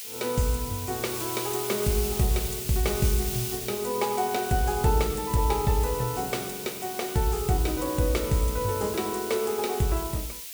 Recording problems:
hiss; SNR 6 dB

